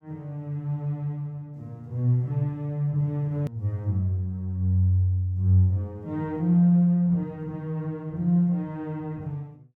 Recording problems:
hard cut with a click; at 3.5 s

